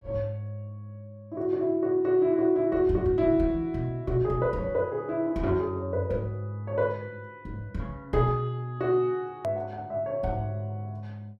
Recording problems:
hard cut with a click; at 9.5 s

